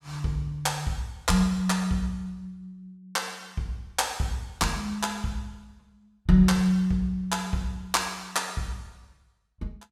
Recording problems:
none

